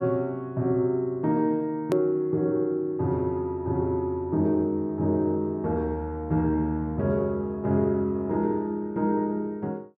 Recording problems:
edit click; at 2 s

